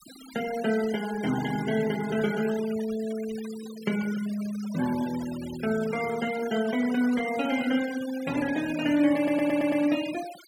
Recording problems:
noise reduction artefacts; signal-to-artefact ratio 14 dB
audio stuttering; at 9 s

